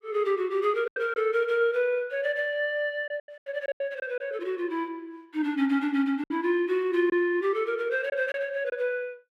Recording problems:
lost packets; 6% of the sound replaced, filled with silence

